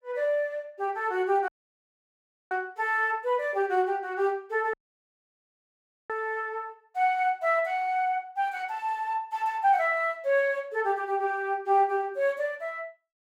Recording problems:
dropout; at 1.5 s for 1 s and at 4.5 s for 1.5 s

